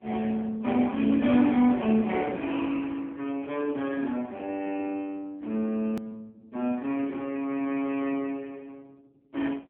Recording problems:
telephone audio; 190 Hz to 3.4 kHz, AMR-NB
edit click; at 6 s

